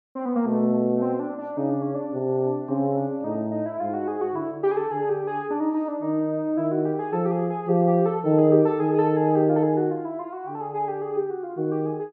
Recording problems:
none

